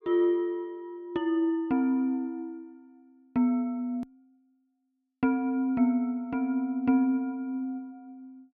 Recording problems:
click at an edit; at 4 s

